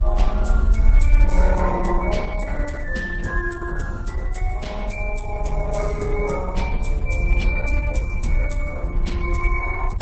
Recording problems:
lossy codec; Vorbis, then Opus, log-spectral distance 2 dB, nothing above 8 kHz
low-frequency rumble; below 54 Hz, SNR -4 dB

